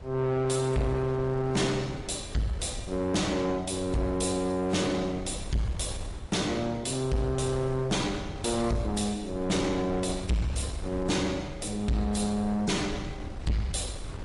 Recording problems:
lossy codec; AAC, then MP3, log-spectral distance 4 dB, nothing above 11 kHz
distorted audio; soft clipping, signal-to-distortion ratio 8 dB
wind on the microphone; below 180 Hz, SNR 13 dB

